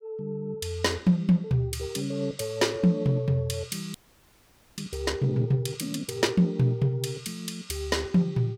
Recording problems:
frozen audio; at 4 s for 1 s

